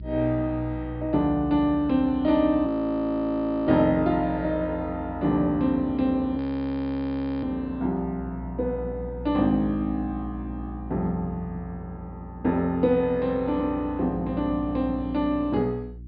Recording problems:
low-pass filter; nothing above 5 kHz
electrical hum; 60 Hz, harmonics up to 360 Hz, SNR 15 dB
frozen audio; at 2.5 s for 1 s and at 6.5 s for 1 s

